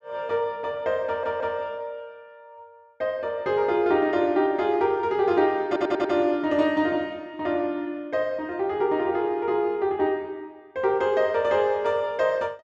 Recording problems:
audio stuttering; at 1 s and at 5.5 s

